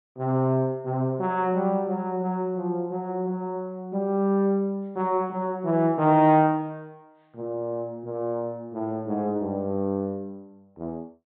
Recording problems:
low-pass filter; nothing above 4 kHz

